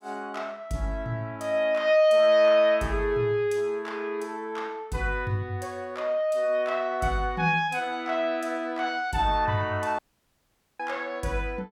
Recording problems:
dropout; at 10 s for 1 s

